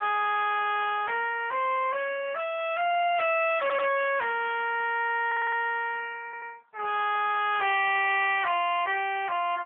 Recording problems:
phone line; 430 Hz to 3.5 kHz, AMR-NB
distorted audio; hard clipping, signal-to-distortion ratio 6 dB
stutter; at 3.5 s, at 5.5 s and at 6.5 s

